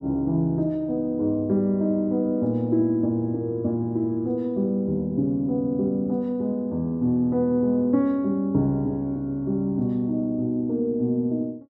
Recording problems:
none

